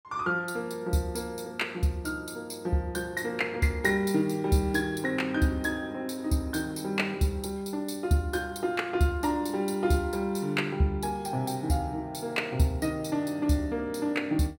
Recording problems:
none

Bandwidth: 16.5 kHz